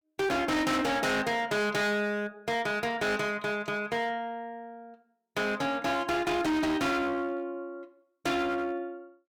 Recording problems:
distortion; hard clipping, signal-to-distortion ratio 6 dB

